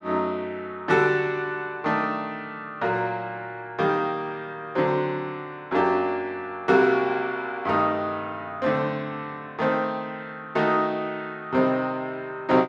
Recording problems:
none

